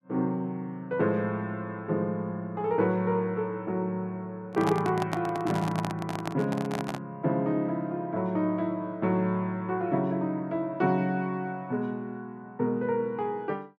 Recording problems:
handling noise; from 4.5 to 7 s; peak +2 dB vs average level

